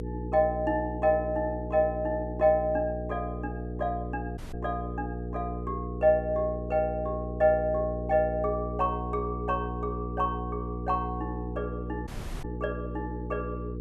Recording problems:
hum; 60 Hz, harmonics up to 480 Hz, SNR 6 dB
audio cutting out; at 4.5 s and at 12 s

